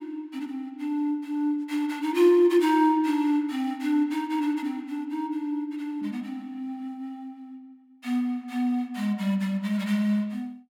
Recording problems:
none

